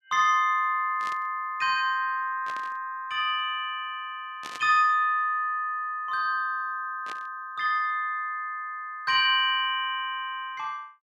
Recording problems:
burst of static; 4 times, first at 1 s; peak -9 dB vs average level

